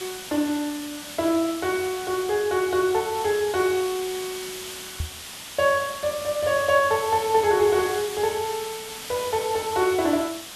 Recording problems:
background hiss; slope +1 dB per octave, SNR 11 dB
knock on the microphone; at 5 s; peak -2 dB vs average level

